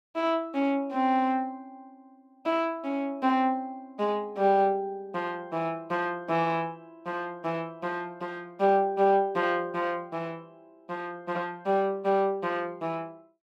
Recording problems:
none

